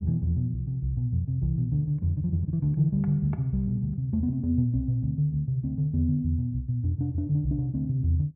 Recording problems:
none

